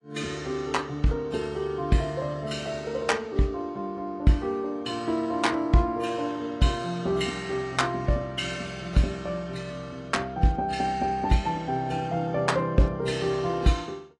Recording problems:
lossy compression; AAC, log-spectral distance 2 dB, nothing above 10.4 kHz

